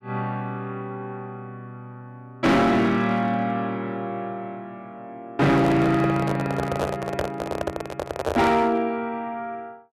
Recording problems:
distorted audio; hard clipping, signal-to-distortion ratio 8 dB
handling noise; from 5.5 to 8.5 s; peak +2 dB vs average level

